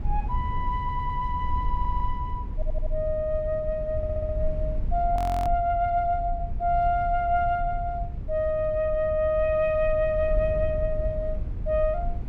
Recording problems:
low-frequency rumble; below 72 Hz, SNR 6 dB
audio stuttering; 4 times, first at 1 s
frozen audio; at 5 s

